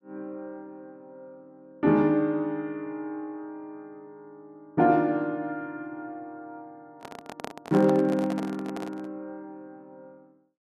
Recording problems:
microphone handling noise; from 7 to 9 s; peak -5 dB vs average level

